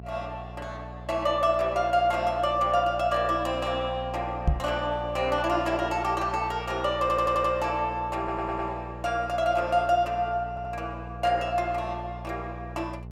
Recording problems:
hum; 60 Hz, harmonics up to 660 Hz, SNR 14 dB
knock on the microphone; at 4.5 s; peak +6 dB vs average level
stutter; at 7 s, at 8 s and at 10 s

